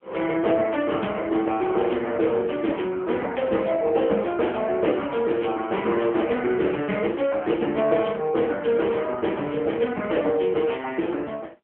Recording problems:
phone line; 240 Hz to 3.3 kHz, AMR-NB

